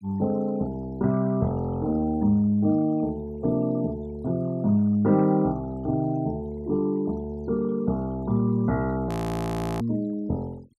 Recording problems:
denoising artefacts; signal-to-artefact ratio 26 dB
frozen audio; at 9 s for 0.5 s

